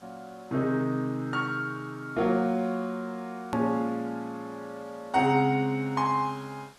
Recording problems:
background hiss; SNR 27 dB
hard cut with a click; at 3.5 s

